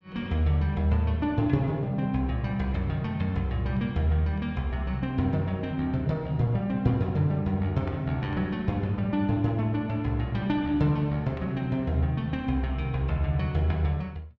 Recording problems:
none

